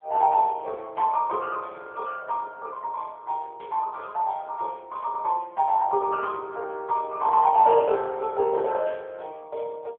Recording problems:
telephone audio; 340 Hz to 3.5 kHz, AMR-NB

